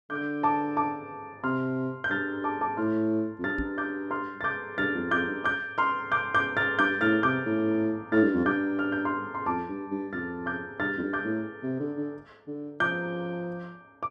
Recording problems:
microphone thump; at 3.5 s; peak -1 dB vs average level

